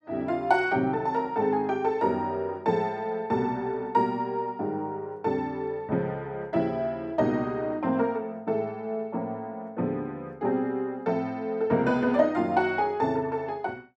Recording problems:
none

